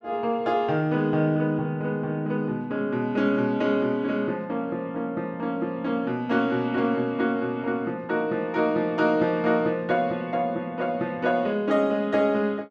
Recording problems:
none

